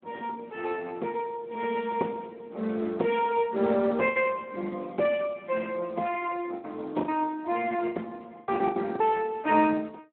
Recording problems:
phone line; 240 Hz to 3.3 kHz, Speex
packet loss; 6% of the sound replaced, filled with the last packet

